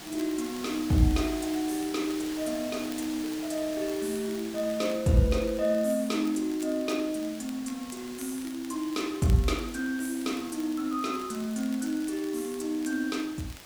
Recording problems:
hiss; slope -2 dB per octave, SNR 14 dB
crackling; vinyl, SNR 23 dB

